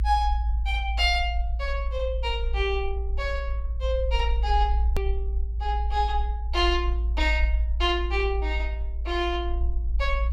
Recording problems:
rumble; below 58 Hz, strongest tone 56 Hz, SNR 0 dB
hard cut with a click; at 5 s

